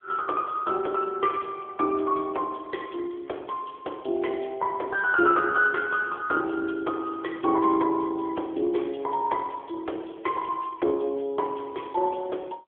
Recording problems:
phone line; 280 Hz to 3.6 kHz, AMR-NB

